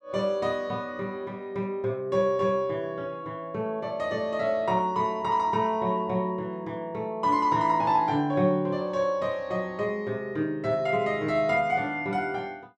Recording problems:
none

